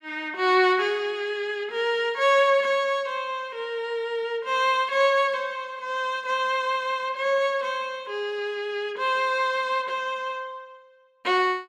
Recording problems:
none

